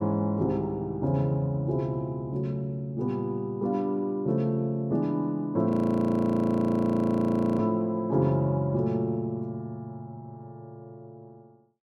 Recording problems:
audio freezing; at 5.5 s for 2 s

